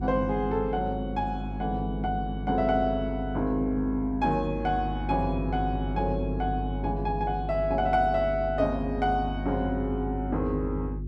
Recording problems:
hum; 50 Hz, harmonics up to 400 Hz, SNR 6 dB

